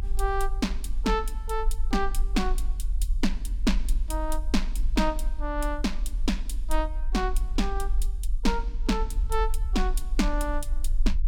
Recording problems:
low-frequency rumble; below 44 Hz, strongest tone 22 Hz, SNR 1 dB

